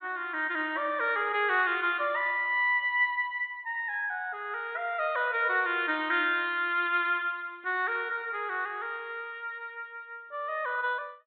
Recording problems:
low-pass filter; nothing above 4 kHz

